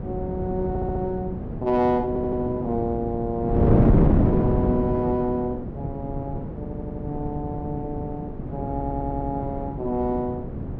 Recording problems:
wind on the microphone; below 310 Hz, SNR -1 dB
stutter; 4 times, first at 0.5 s

